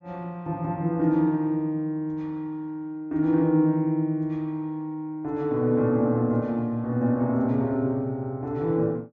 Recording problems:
treble cut off; nothing above 8 kHz

